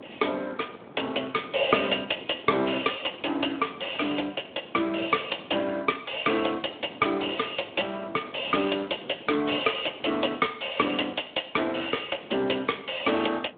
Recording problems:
telephone audio; 220 Hz to 3.6 kHz, Speex
wind noise; below 700 Hz, SNR 19 dB

